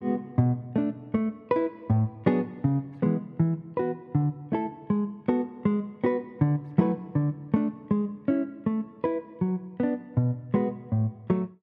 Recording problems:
none

